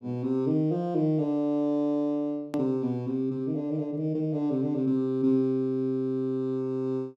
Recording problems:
hard cut with a click; at 2.5 s

